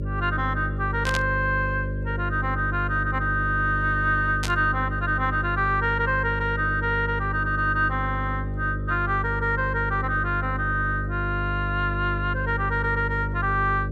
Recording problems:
electrical hum; 50 Hz, harmonics up to 600 Hz, SNR 5 dB
static burst; at 1 s and at 4.5 s; peak 0 dB vs average level

